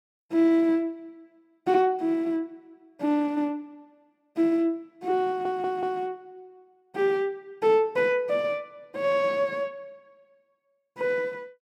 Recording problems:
audio stuttering; at 5.5 s

